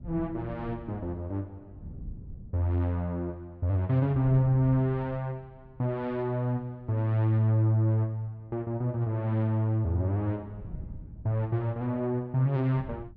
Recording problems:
wind on the microphone; below 140 Hz, SNR 17 dB

